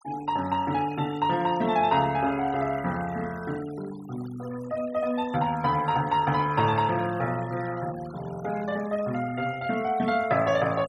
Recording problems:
denoising artefacts; signal-to-artefact ratio 19 dB

